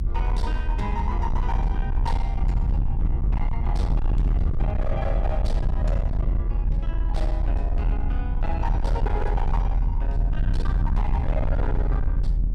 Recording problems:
distortion; hard clipping, signal-to-distortion ratio 7 dB
mains hum; 60 Hz, harmonics up to 720 Hz, SNR 13 dB
rumble; below 70 Hz, strongest tone 40 Hz, SNR -7 dB

